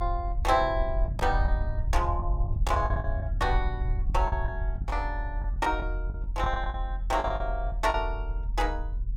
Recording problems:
rumble; below 66 Hz, strongest tone 42 Hz, SNR 1 dB
packet loss; 9% of the sound replaced, filled with the last packet

